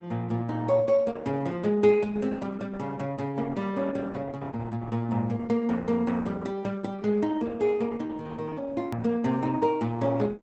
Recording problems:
codec artefacts; Opus, log-spectral distance 3 dB, nothing above 20.1 kHz
click at an edit; at 9 s

